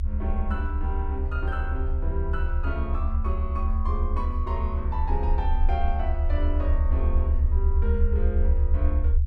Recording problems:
rumble; below 74 Hz, strongest tone 28 Hz, SNR -8 dB

